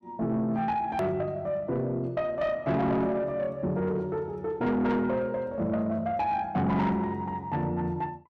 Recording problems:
distortion; soft clipping, signal-to-distortion ratio 10 dB
hard cut with a click; at 1 s

